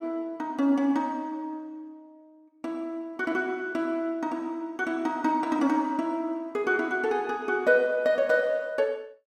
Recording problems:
none

